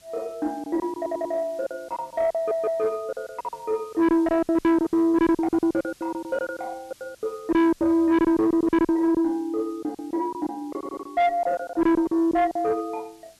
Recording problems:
distortion; soft clipping, signal-to-distortion ratio 6 dB
hiss; SNR 29 dB
lost packets; 16% of the sound replaced, filled with silence
audio stuttering; at 1 s, at 2.5 s and at 11 s

